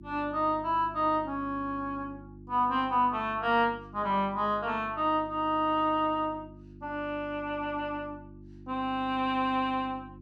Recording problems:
mains hum; 50 Hz, harmonics up to 350 Hz, SNR 19 dB

